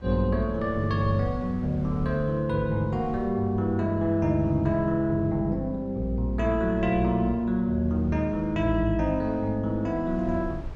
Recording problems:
low-frequency rumble; below 88 Hz, SNR 19 dB

